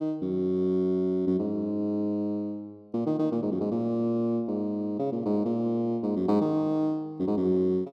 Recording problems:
none

